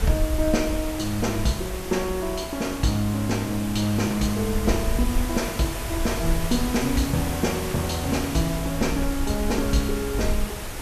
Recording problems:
hum; 60 Hz, harmonics up to 720 Hz, SNR 22 dB
background hiss; slope -4 dB per octave, SNR 7 dB
wind noise; below 66 Hz, SNR 7 dB

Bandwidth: 14 kHz